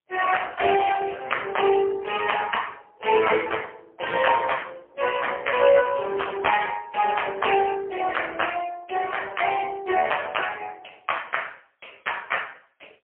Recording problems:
telephone audio; 320 Hz to 3.2 kHz, AMR-NB, then MP3

